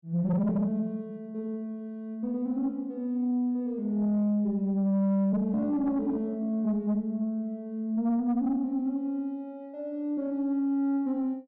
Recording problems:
distorted audio; soft clipping, signal-to-distortion ratio 10 dB

